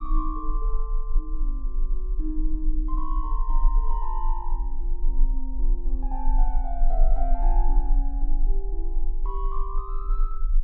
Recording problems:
low-frequency rumble; below 34 Hz, strongest tone 24 Hz, SNR -9 dB

